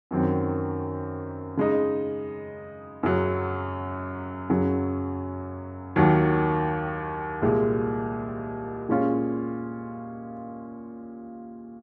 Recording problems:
none

